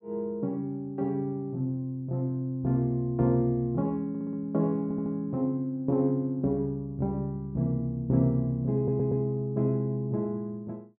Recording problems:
stutter; at 4 s, at 5 s and at 9 s

